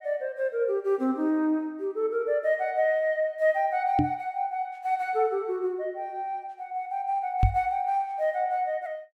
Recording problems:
microphone bump; at 4 s and at 7.5 s; peak +8 dB vs average level

